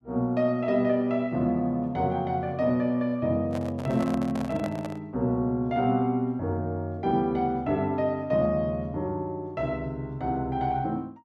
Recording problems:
handling noise; from 3.5 to 5 s; peak -5 dB vs average level

